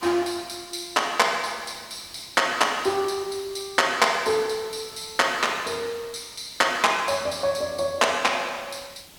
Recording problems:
background hiss; slope -1 dB per octave, SNR 23 dB

